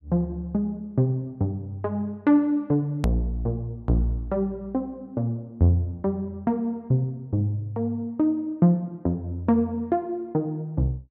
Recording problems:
click at an edit; at 3 s

